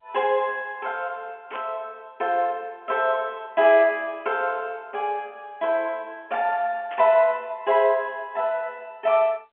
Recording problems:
telephone audio; 240 Hz to 3.3 kHz, G.711
burst of static; at 1.5 s and at 7 s; peak -11 dB vs average level

